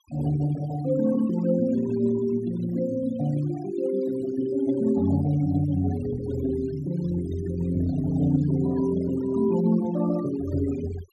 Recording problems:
noise reduction artefacts; signal-to-artefact ratio 19 dB

